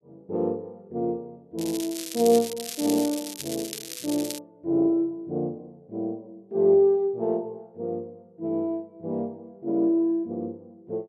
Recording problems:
crackling; from 1.5 to 4.5 s; loose cable, SNR 8 dB

